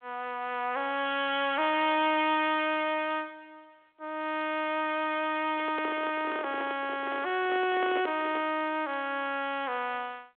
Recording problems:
telephone audio; 300 Hz to 3.4 kHz, G.726
distortion; hard clipping, signal-to-distortion ratio 8 dB
microphone handling noise; from 5.5 to 8.5 s; peak -4 dB vs average level

